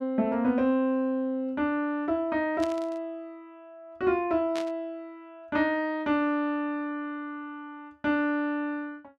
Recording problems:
burst of static; at 2.5 s and at 4.5 s; peak -6 dB vs average level

